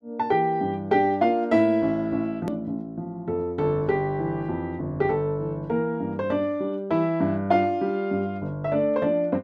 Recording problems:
edit click; at 2.5 s

